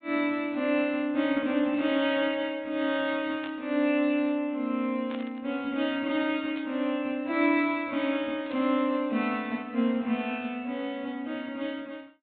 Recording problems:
low-pass filter; nothing above 4 kHz
burst of static; 4 times, first at 3.5 s; peak -10 dB vs average level

